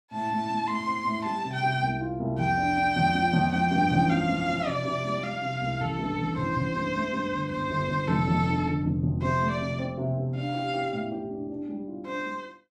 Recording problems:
none

